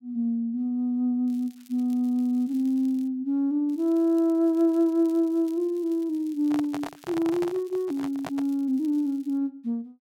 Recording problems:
crackle; from 1.5 to 3 s and from 3.5 to 9.5 s; loose cable, SNR 30 dB
handling noise; from 6.5 to 8.5 s; peak -6 dB vs average level

